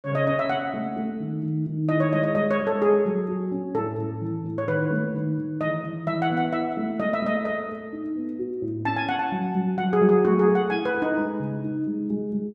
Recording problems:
none

